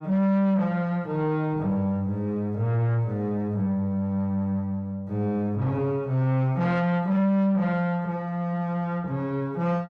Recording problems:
distortion; soft clipping, signal-to-distortion ratio 7 dB

